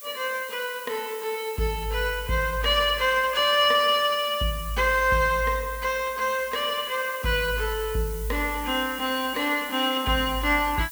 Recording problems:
background hiss; slope +3 dB per octave, SNR 15 dB

